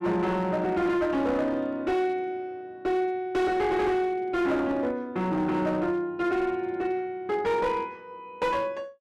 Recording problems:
distortion; hard clipping, uneven, signal-to-distortion ratio 11 dB

